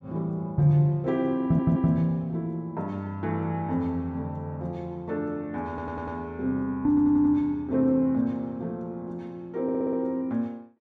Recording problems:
stutter; 4 times, first at 1.5 s

